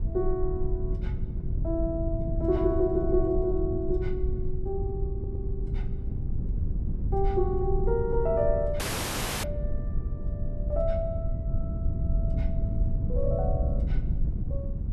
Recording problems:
rumble; below 60 Hz, strongest tone 22 Hz, SNR 7 dB
wind on the microphone; below 110 Hz, SNR 2 dB
stutter; at 5 s
dropout; at 9 s for 0.5 s

